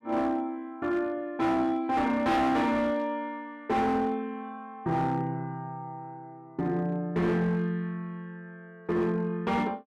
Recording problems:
distorted audio; hard clipping, signal-to-distortion ratio 10 dB

